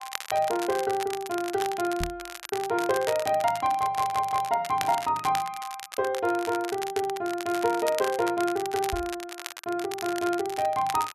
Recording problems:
crackle; vinyl, SNR 11 dB
microphone thump; at 2 s and at 9 s; peak -3 dB vs average level
stutter; at 4 s

